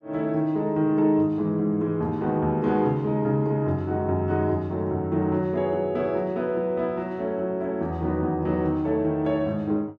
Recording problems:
none

